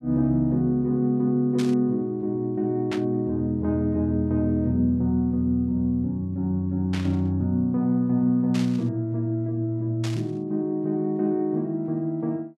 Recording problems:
burst of static; 5 times, first at 1.5 s; peak -6 dB vs average level

